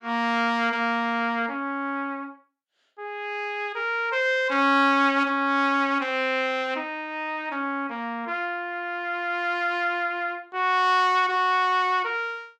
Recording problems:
none

